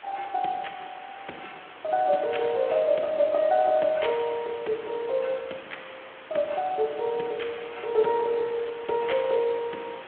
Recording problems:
telephone audio; 280 Hz to 3.8 kHz, Speex
background hiss; SNR 17 dB

